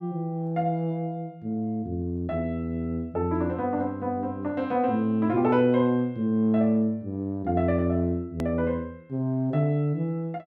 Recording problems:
edit click; at 8.5 s

